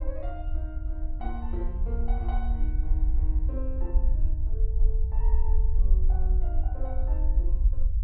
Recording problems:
treble cut off; nothing above 5.5 kHz
low-frequency rumble; below 54 Hz, SNR -14 dB

